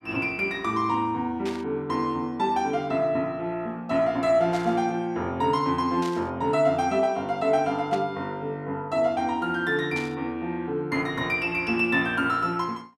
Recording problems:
burst of static; 5 times, first at 1.5 s; peak -8 dB vs average level

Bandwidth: 14.5 kHz